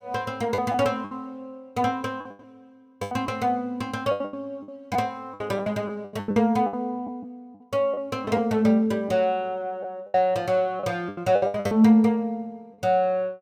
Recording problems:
packet loss; 12% of the sound replaced, filled with the last packet

